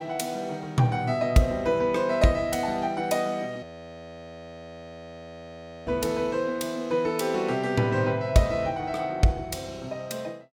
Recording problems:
audio freezing; at 3.5 s for 2 s

